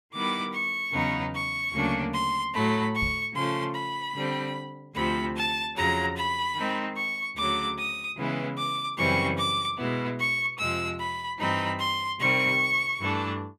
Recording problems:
knock on the microphone; at 3 s; peak -3 dB vs average level

